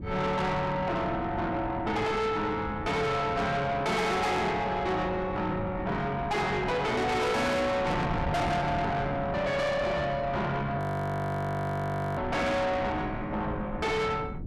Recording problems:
distortion; soft clipping, signal-to-distortion ratio 6 dB
wind noise; below 350 Hz, SNR 9 dB
frozen audio; at 11 s for 1.5 s

